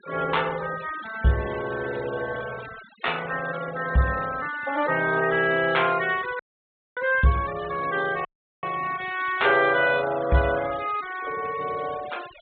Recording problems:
treble missing; nothing above 4 kHz
denoising artefacts; signal-to-artefact ratio 17 dB
audio cutting out; at 6.5 s for 0.5 s and at 8.5 s

